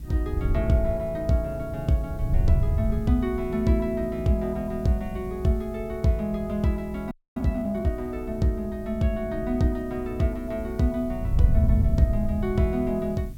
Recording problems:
background hiss; slope +1 dB per octave, SNR 30 dB
rumble; below 110 Hz, strongest tone 58 Hz, SNR 14 dB
wind noise; below 100 Hz, SNR 3 dB
audio freezing; at 7 s

